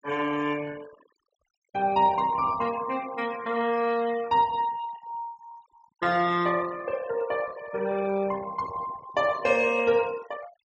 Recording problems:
treble cut off; nothing above 8 kHz
noise reduction artefacts; signal-to-artefact ratio 19 dB

